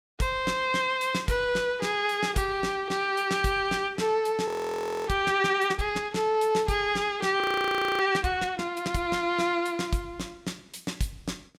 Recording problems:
frozen audio; at 4.5 s for 0.5 s and at 7.5 s for 0.5 s

